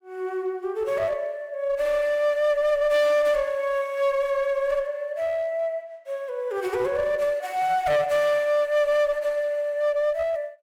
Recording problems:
distorted audio; hard clipping, uneven, signal-to-distortion ratio 9 dB

